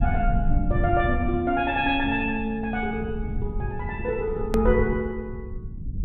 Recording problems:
low-pass filter; nothing above 4 kHz
low-frequency rumble; below 110 Hz, SNR 5 dB
hard cut with a click; at 4.5 s

